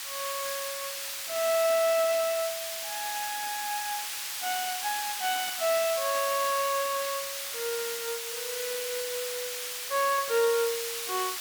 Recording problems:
hiss; SNR 2 dB

